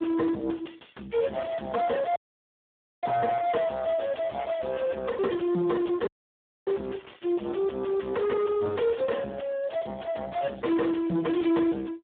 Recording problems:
telephone audio; 150 Hz to 2.8 kHz, Speex
distorted audio; soft clipping, signal-to-distortion ratio 6 dB
crackle; from 1 to 7 s and at 8 s; loose cable, SNR 27 dB
dropout; at 2 s for 1 s and at 6 s for 0.5 s

